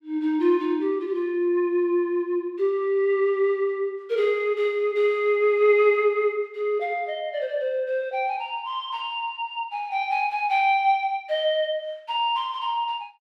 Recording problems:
none

